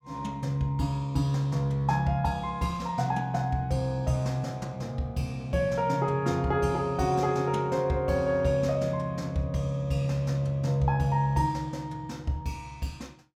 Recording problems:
none

